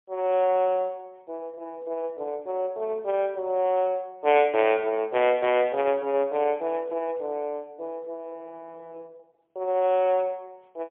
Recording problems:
phone line; 320 Hz to 3.3 kHz, AMR-NB, then MP3

